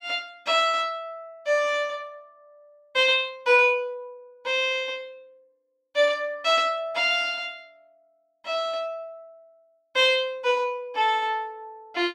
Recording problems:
none

